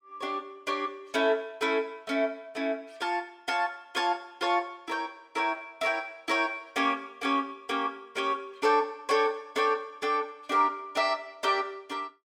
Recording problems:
none

